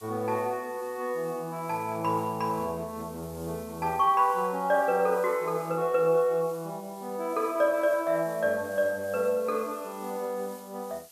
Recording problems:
hiss; slope +2 dB per octave, SNR 21 dB

